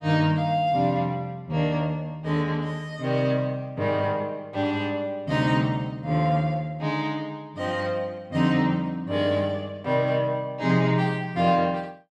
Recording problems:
none

